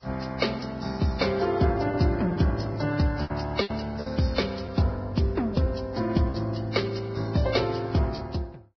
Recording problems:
lossy compression; Vorbis, then Vorbis, log-spectral distance 5 dB, nothing above 5.5 kHz
lost packets; 5% of the sound replaced, filled with repeated pitch periods

